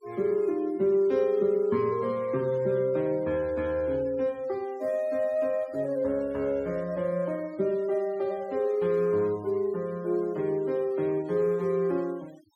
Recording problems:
noise reduction artefacts; signal-to-artefact ratio 26 dB

